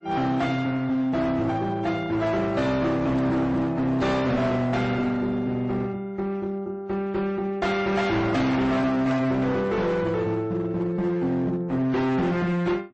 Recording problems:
lossy codec; AAC, then MP3, log-spectral distance 2 dB, nothing above 8.2 kHz
distortion; hard clipping, uneven, signal-to-distortion ratio 7 dB

